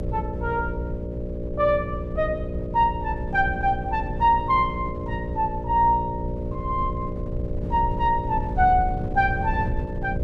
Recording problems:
hum; 60 Hz, harmonics up to 600 Hz, SNR 8 dB
wind noise; below 110 Hz, SNR 9 dB

